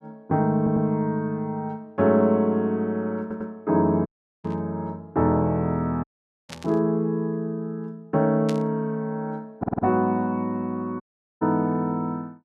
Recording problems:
stutter; at 0.5 s, at 3 s and at 9.5 s
dropout; at 4 s, at 6 s and at 11 s
static burst; at 4.5 s, at 6.5 s and at 8.5 s; peak -7 dB vs average level

